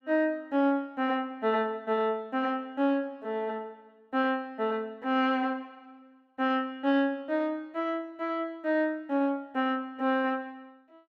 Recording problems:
none

